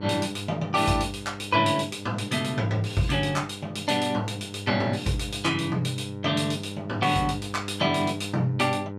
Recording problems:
electrical hum; 50 Hz, harmonics up to 1.4 kHz, SNR 12 dB

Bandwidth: 14.5 kHz